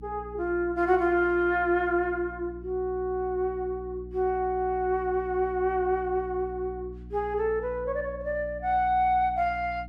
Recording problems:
hum; 60 Hz, harmonics up to 300 Hz, SNR 16 dB

